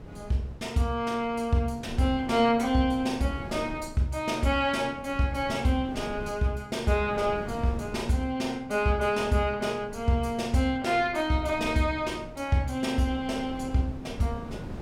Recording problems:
wind noise; below 330 Hz, SNR 16 dB

